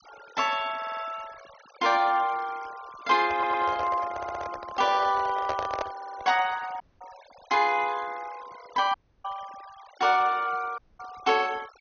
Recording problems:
treble cut off; nothing above 6.4 kHz
denoising artefacts; signal-to-artefact ratio 20 dB
audio stuttering; 4 times, first at 1 s
handling noise; from 3 to 6.5 s; peak -1 dB vs average level
dropout; at 7 s, at 9 s and at 11 s

